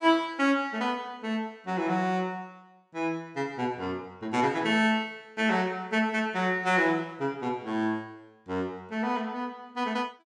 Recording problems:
none

